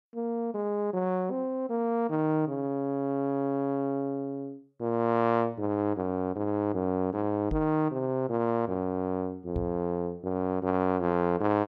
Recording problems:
knock on the microphone; at 7.5 s and at 9.5 s; peak -1 dB vs average level

